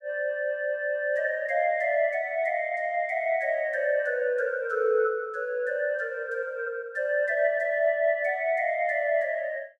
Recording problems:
none

